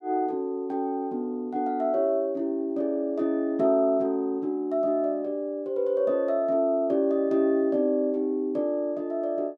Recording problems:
none

